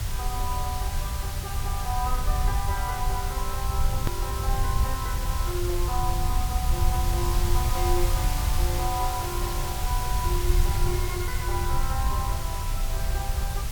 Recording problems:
hiss; slope -1 dB per octave, SNR 2 dB
rumble; below 78 Hz, SNR -4 dB
edit click; at 4 s

